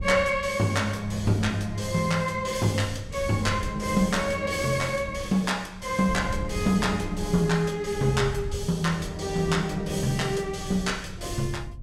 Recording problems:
wind noise; below 110 Hz, SNR 13 dB

